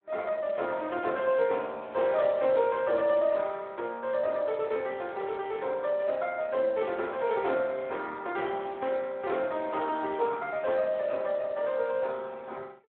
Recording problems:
telephone audio; 280 Hz to 3.5 kHz, Speex

